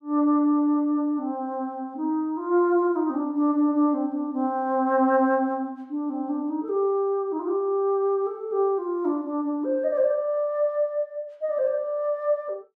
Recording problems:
none

